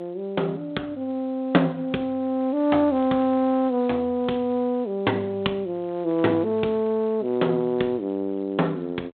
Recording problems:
phone line; 220 Hz to 3.7 kHz, G.726

